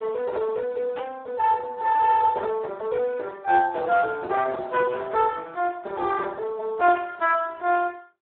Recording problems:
phone line; 320 Hz to 3.5 kHz, Speex
static burst; at 1 s, at 4 s and at 7 s; peak -11 dB vs average level

